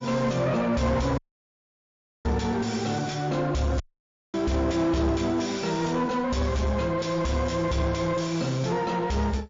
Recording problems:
codec artefacts; MP3, log-spectral distance 4 dB
distorted audio; soft clipping, signal-to-distortion ratio 7 dB
dropout; at 1 s for 1 s and at 4 s for 0.5 s

